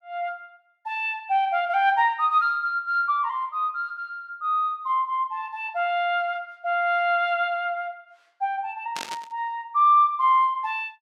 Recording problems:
static burst; at 9 s; peak -6 dB vs average level

